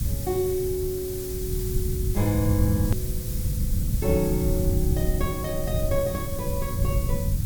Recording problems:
hum; 60 Hz, harmonics up to 720 Hz, SNR 18 dB
hiss; slope +2 dB per octave, SNR 8 dB
rumble; below 120 Hz, SNR 1 dB
edit click; at 3 s

